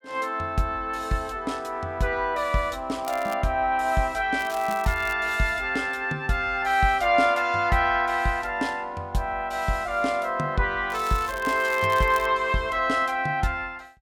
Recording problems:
crackle; at 3 s, at 4.5 s and from 11 to 12 s; loose cable, SNR 18 dB

